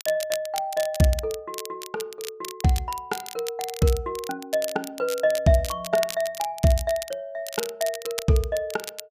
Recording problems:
crackling; vinyl, SNR 11 dB

